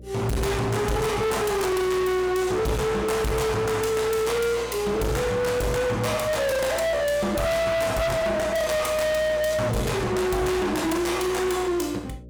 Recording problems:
distorted audio; hard clipping, signal-to-distortion ratio 6 dB
hum; 60 Hz, harmonics up to 600 Hz, SNR 20 dB

